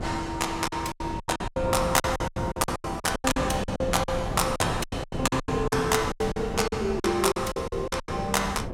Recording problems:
wind on the microphone; below 470 Hz, SNR 7 dB
lost packets; 20% of the sound replaced, filled with silence

